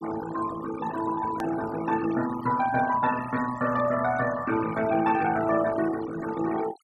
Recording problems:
denoising artefacts; signal-to-artefact ratio 11 dB
hard cut with a click; at 1.5 s

